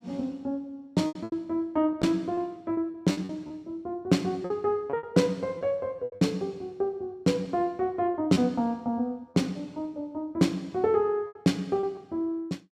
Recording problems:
lost packets; 7% of the sound replaced, filled with repeated pitch periods

